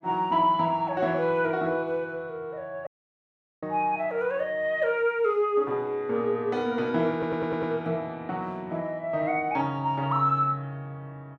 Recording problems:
dropout; at 3 s for 1 s
stutter; at 7 s

